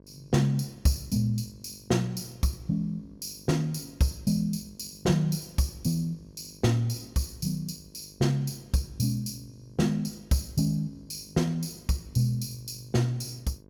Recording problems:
hum; 50 Hz, harmonics up to 1.1 kHz, SNR 25 dB

